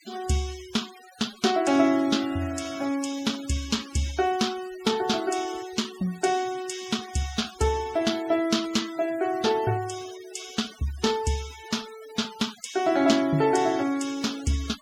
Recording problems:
denoising artefacts; signal-to-artefact ratio 16 dB

